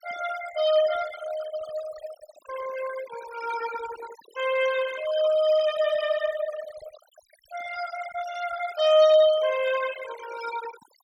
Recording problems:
noise reduction artefacts; signal-to-artefact ratio 14 dB

